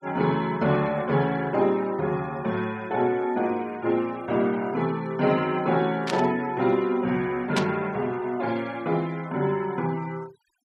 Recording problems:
denoising artefacts; signal-to-artefact ratio 22 dB
static burst; at 6 s and at 7.5 s; peak +2 dB vs average level

